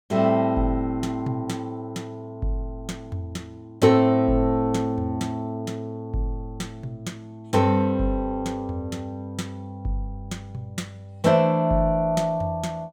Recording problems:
none

